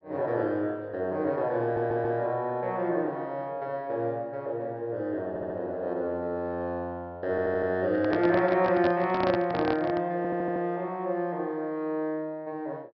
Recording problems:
low-pass filter; nothing above 5.5 kHz
audio stuttering; 4 times, first at 1.5 s
handling noise; from 8 to 10 s; peak +1 dB vs average level

